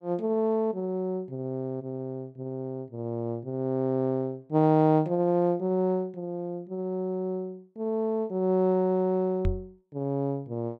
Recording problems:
microphone thump; at 9.5 s; peak +3 dB vs average level

